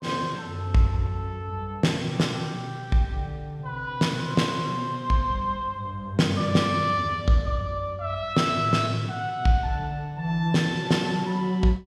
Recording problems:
none

